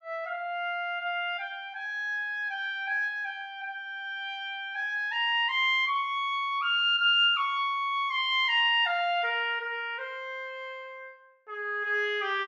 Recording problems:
none

